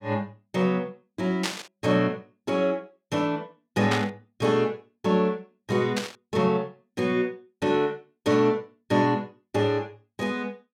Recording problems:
burst of static; at 1.5 s, at 4 s and at 6 s; peak +3 dB vs average level

